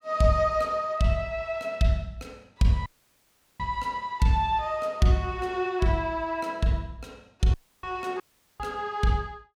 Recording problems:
audio cutting out; at 3 s for 0.5 s, at 7.5 s and at 8 s

